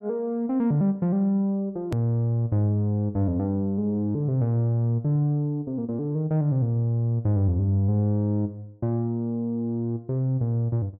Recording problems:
hard cut with a click; at 2 s

